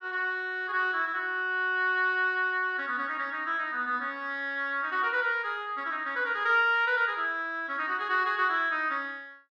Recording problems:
none

